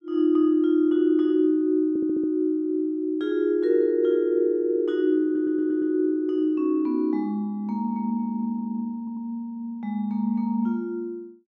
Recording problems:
audio stuttering; at 2 s, at 5 s and at 9 s

